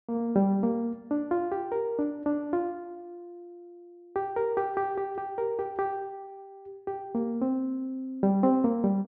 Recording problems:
none

